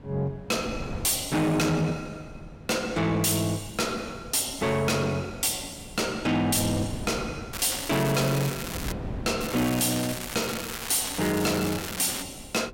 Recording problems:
distorted audio; soft clipping, signal-to-distortion ratio 6 dB
wind on the microphone; below 340 Hz, SNR 15 dB
crackling; from 7.5 to 9 s and from 9.5 to 12 s; loose cable, SNR 8 dB

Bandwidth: 16.5 kHz